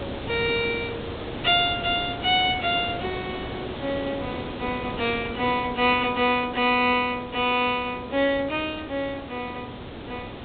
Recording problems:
treble cut off; nothing above 4 kHz
background hiss; SNR 10 dB

